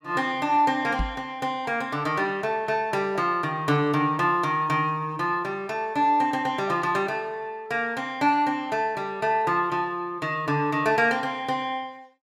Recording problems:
microphone thump; at 1 s; peak 0 dB vs average level

